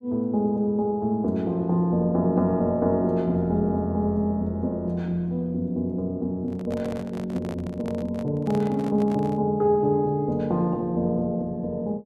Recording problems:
microphone handling noise; from 6.5 to 9.5 s; peak -7 dB vs average level

